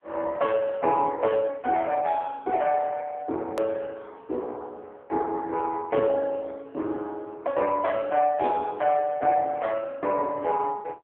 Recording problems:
telephone audio; 240 Hz to 3.3 kHz, AMR-NB
click at an edit; at 3.5 s

